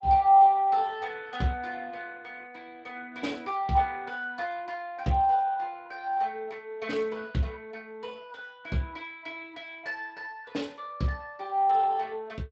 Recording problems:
codec artefacts; MP2, then Speex, log-spectral distance 3 dB

